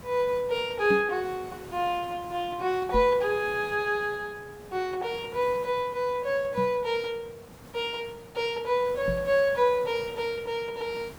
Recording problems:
background hiss; slope -5 dB per octave, SNR 19 dB
microphone thump; 4 times, first at 1 s; peak 0 dB vs average level

